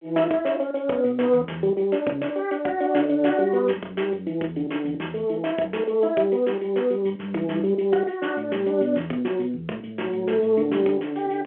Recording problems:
phone line; 240 Hz to 3.3 kHz, G.711

